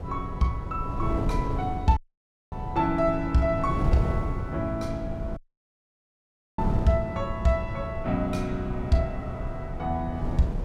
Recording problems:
wind on the microphone; below 160 Hz, SNR 4 dB
dropout; at 2 s for 0.5 s and at 5.5 s for 1 s

